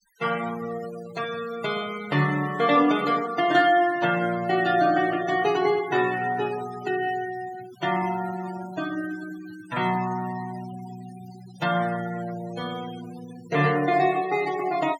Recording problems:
denoising artefacts; signal-to-artefact ratio 16 dB

